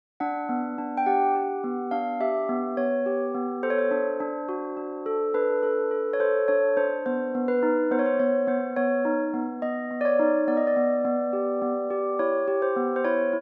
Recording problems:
none

